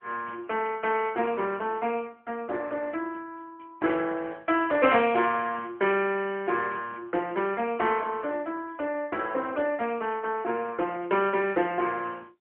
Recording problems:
phone line; 240 Hz to 3.3 kHz, AMR-NB

